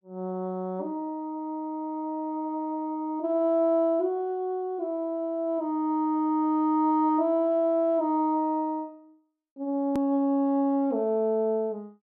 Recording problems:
click at an edit; at 10 s

